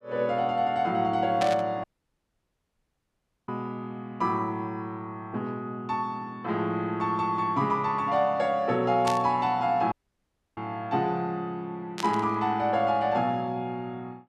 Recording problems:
burst of static; at 1.5 s, at 9 s and at 12 s; peak -1 dB vs average level
dropout; at 2 s for 1.5 s and at 10 s for 0.5 s

